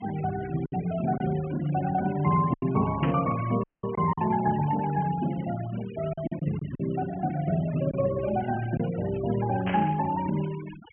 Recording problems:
low-pass filter; nothing above 3.1 kHz
denoising artefacts; signal-to-artefact ratio 16 dB
packet loss; 4% of the sound replaced, filled with silence
burst of static; at 3 s and at 9.5 s; peak -3 dB vs average level
audio cutting out; at 3.5 s

